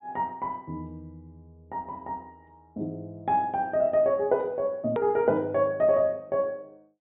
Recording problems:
treble cut off; nothing above 4 kHz
hard cut with a click; at 5 s

